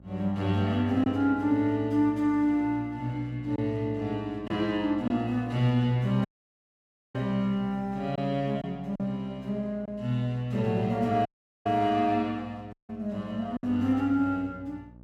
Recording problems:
electrical hum; 60 Hz, harmonics up to 900 Hz, SNR 23 dB
packet loss; 1.8% of the sound replaced, filled with silence
audio cutting out; at 6.5 s for 1 s, at 11 s and at 13 s

